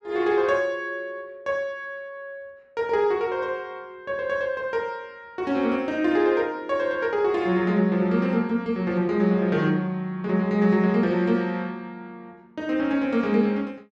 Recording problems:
none

